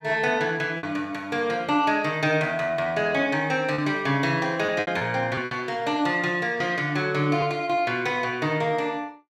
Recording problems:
lost packets; 4% of the sound replaced, filled with repeated pitch periods

